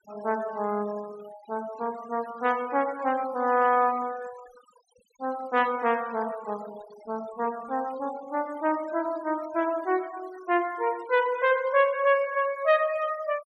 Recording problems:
denoising artefacts; signal-to-artefact ratio 21 dB

